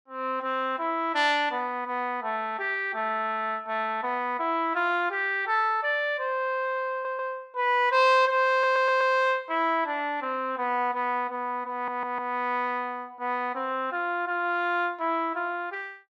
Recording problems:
stutter; at 7 s, at 8.5 s and at 12 s

